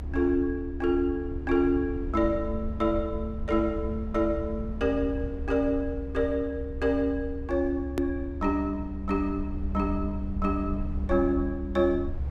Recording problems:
low-frequency rumble; below 72 Hz, SNR 8 dB
click at an edit; at 8 s

